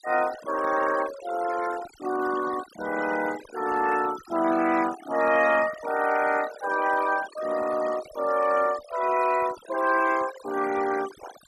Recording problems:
denoising artefacts; signal-to-artefact ratio 14 dB

